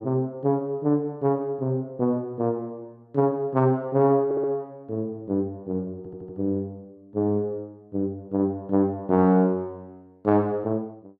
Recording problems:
stutter; at 4.5 s and at 6 s

